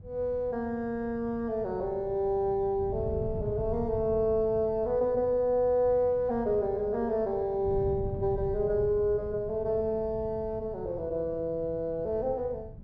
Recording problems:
wind on the microphone; below 150 Hz, SNR 13 dB

